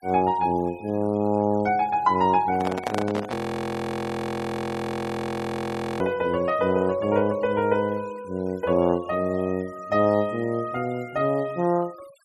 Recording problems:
denoising artefacts; signal-to-artefact ratio 24 dB
microphone handling noise; from 2.5 to 6 s; peak 0 dB vs average level
frozen audio; at 3.5 s for 2.5 s

